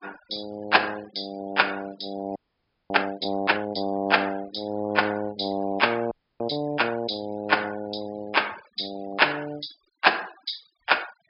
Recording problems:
treble cut off; nothing above 5.5 kHz
noise reduction artefacts; signal-to-artefact ratio 23 dB
frozen audio; at 2.5 s for 0.5 s and at 6 s

